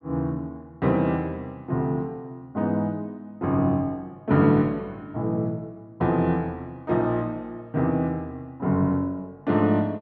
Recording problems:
none

